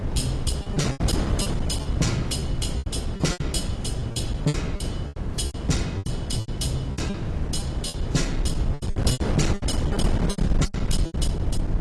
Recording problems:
lossy codec; AAC, log-spectral distance 3 dB, nothing above 11 kHz
distortion; hard clipping, uneven, signal-to-distortion ratio 11 dB
hum; 50 Hz, harmonics up to 500 Hz, SNR 12 dB
low-frequency rumble; below 94 Hz, SNR 2 dB
wind noise; below 310 Hz, SNR 1 dB
packet loss; 15% of the sound replaced, filled with repeated pitch periods

